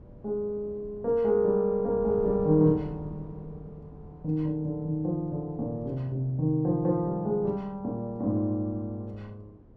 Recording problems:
wind on the microphone; below 290 Hz, SNR 19 dB

